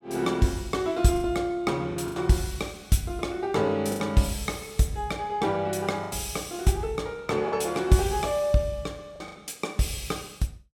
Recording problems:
lost packets; 5% of the sound replaced, filled with the last packet

